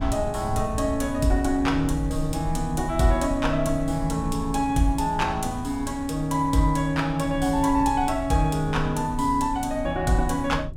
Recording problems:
wind noise; below 94 Hz, SNR 10 dB

